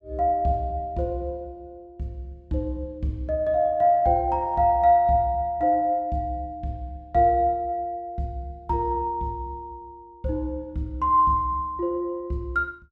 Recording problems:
none

